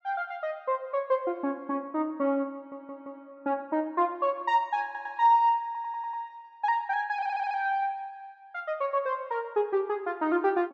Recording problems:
audio stuttering; 4 times, first at 2.5 s

